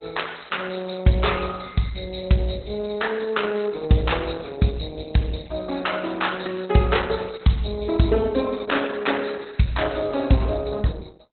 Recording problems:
codec artefacts; Opus, log-spectral distance 8 dB, nothing above 4.1 kHz

